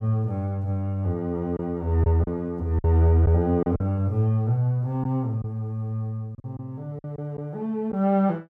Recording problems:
packet loss; 5% of the sound replaced, filled with silence

